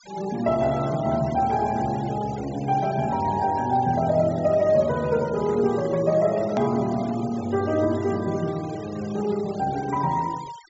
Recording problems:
low-pass filter; nothing above 8 kHz
denoising artefacts; signal-to-artefact ratio 20 dB
edit click; at 6.5 s

